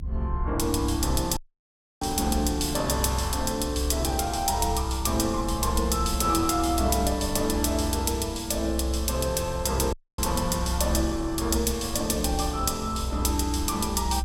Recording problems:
low-frequency rumble; below 66 Hz, strongest tone 64 Hz, SNR 6 dB
dropout; at 1.5 s for 0.5 s and at 10 s

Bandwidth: 16 kHz